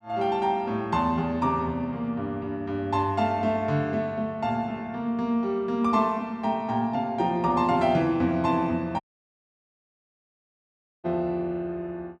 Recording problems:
dropout; at 9 s for 2 s

